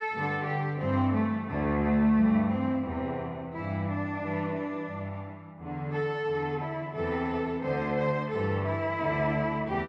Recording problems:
none

